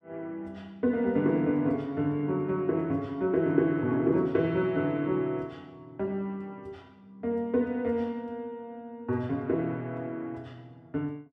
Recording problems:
none

